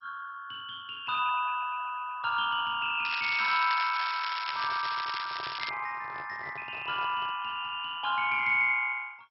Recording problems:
lossy compression; MP2, log-spectral distance 7 dB, nothing above 5.3 kHz
crackle; from 3 to 5.5 s; loose cable, SNR 7 dB
handling noise; from 4.5 to 7.5 s; peak -12 dB vs average level

